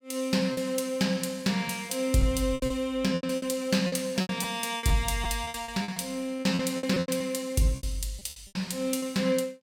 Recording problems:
lost packets; 14% of the sound replaced, filled with repeated pitch periods

